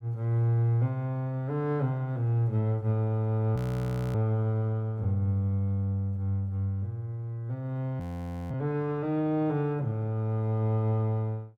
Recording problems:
frozen audio; at 3.5 s for 0.5 s and at 8 s for 0.5 s

